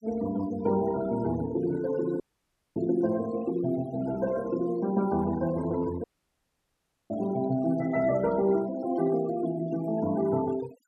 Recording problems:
denoising artefacts; signal-to-artefact ratio 18 dB
dropout; at 2 s for 0.5 s and at 6 s for 1 s

